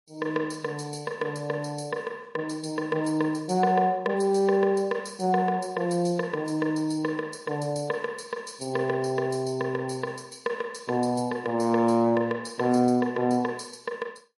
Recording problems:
lossy codec; MP3, log-spectral distance 3 dB, nothing above 11 kHz

